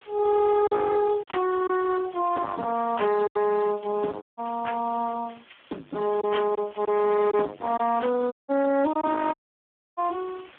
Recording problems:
telephone audio; 220 Hz to 3.9 kHz, Speex
distortion; soft clipping, signal-to-distortion ratio 10 dB
hiss; SNR 27 dB
lost packets; 4% of the sound replaced, filled with silence
audio cutting out; at 4 s, at 8.5 s and at 9.5 s for 0.5 s

